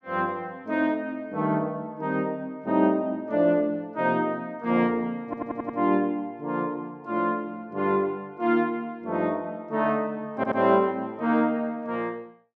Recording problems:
audio stuttering; at 5.5 s and at 10 s

